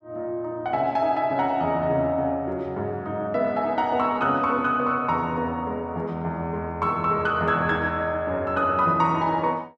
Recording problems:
none

